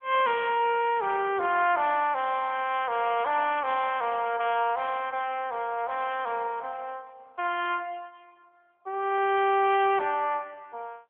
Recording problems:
telephone audio; 320 Hz to 3.4 kHz, AMR-NB

